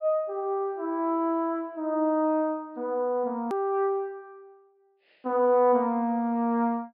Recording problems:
treble cut off; nothing above 5.1 kHz
hard cut with a click; at 3.5 s

